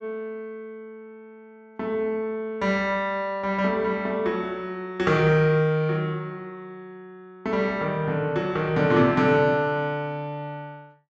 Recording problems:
treble missing; nothing above 8 kHz

